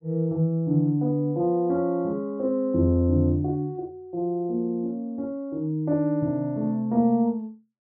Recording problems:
none

